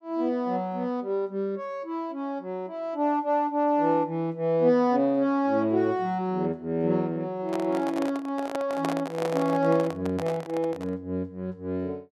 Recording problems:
handling noise; from 7.5 to 11 s; peak 0 dB vs average level

